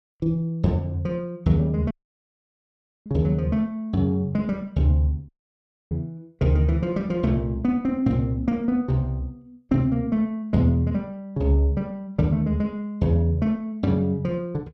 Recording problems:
audio cutting out; at 2 s for 1 s and at 5.5 s for 0.5 s

